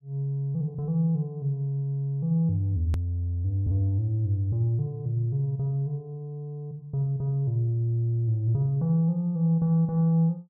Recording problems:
click at an edit; at 3 s

